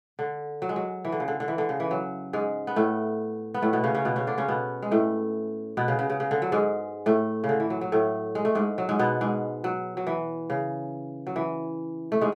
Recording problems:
none

